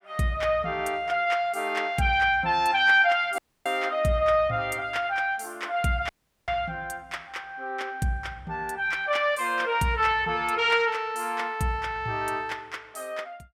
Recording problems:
dropout; at 3.5 s and at 6 s

